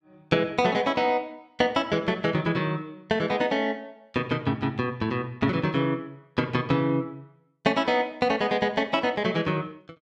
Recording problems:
none

